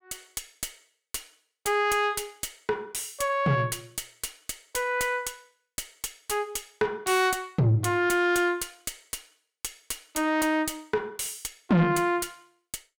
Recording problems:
distorted audio; soft clipping, signal-to-distortion ratio 11 dB

